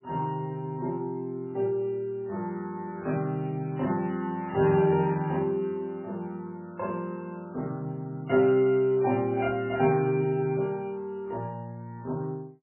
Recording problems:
lossy compression; MP3, log-spectral distance 2 dB, nothing above 2.4 kHz

